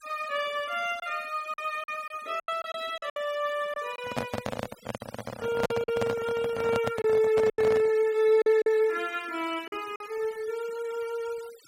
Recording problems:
noise reduction artefacts; signal-to-artefact ratio 20 dB
packet loss; 7% of the sound replaced, filled with silence
microphone handling noise; from 4 to 8 s; peak +4 dB vs average level

